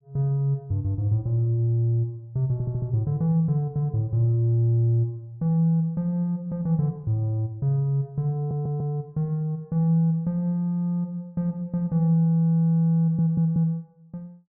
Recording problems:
treble missing; nothing above 3 kHz
audio stuttering; at 2.5 s, at 8.5 s and at 13 s

